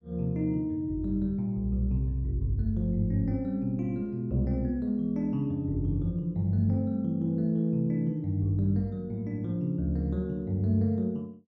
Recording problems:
none

